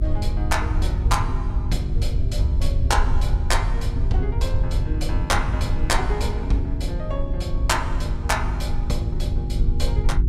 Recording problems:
electrical hum; 50 Hz, harmonics up to 400 Hz, SNR 5 dB
low-frequency rumble; below 76 Hz, SNR -3 dB

